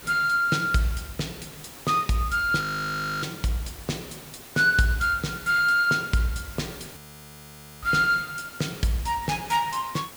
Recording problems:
hiss; slope -3 dB per octave, SNR 17 dB
frozen audio; at 2.5 s for 0.5 s and at 7 s for 1 s

